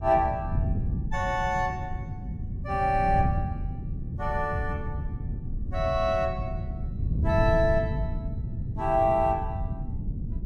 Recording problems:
wind on the microphone; below 140 Hz, SNR 4 dB

